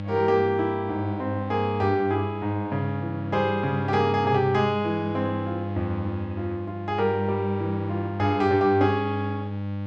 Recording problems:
hum; 50 Hz, harmonics up to 1.1 kHz, SNR 6 dB

